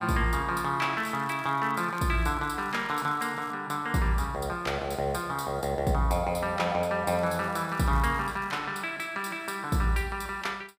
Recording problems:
crackle; from 1 to 3.5 s and from 7 to 8.5 s; loose cable, SNR 25 dB

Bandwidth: 15.5 kHz